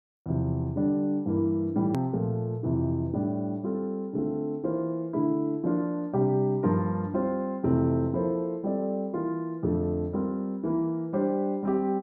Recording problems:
hard cut with a click; at 2 s

